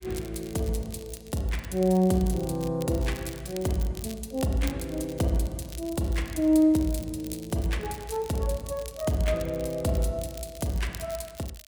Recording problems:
crackling; vinyl, SNR 18 dB

